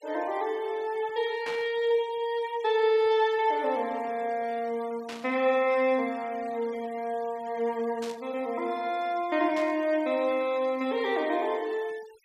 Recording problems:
denoising artefacts; signal-to-artefact ratio 23 dB
burst of static; 4 times, first at 1.5 s; peak -7 dB vs average level

